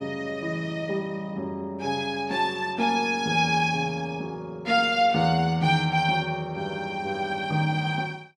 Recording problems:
none

